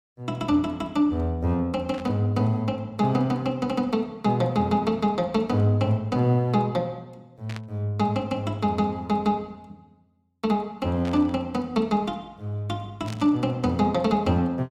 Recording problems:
static burst; 4 times, first at 2 s; peak -10 dB vs average level

